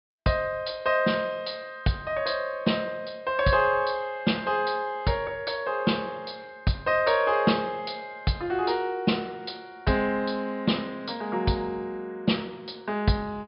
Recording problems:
treble missing; nothing above 5.5 kHz

